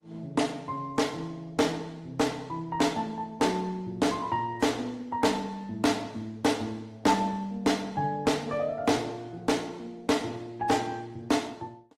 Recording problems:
lossy codec; Opus, then AAC, log-spectral distance 3 dB, nothing above 15.5 kHz
distortion; hard clipping, signal-to-distortion ratio 11 dB

